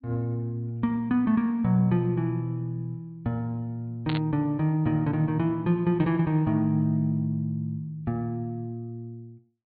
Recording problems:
treble missing; nothing above 4.5 kHz
burst of static; at 4 s; peak -4 dB vs average level

